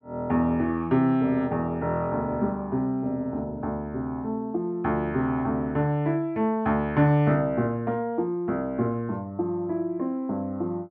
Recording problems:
none

